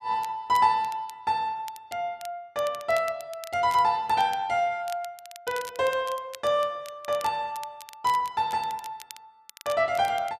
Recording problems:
crackling; vinyl, SNR 19 dB

